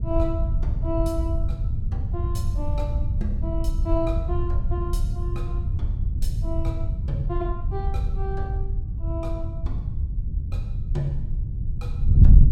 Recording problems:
wind on the microphone; below 92 Hz, SNR -7 dB

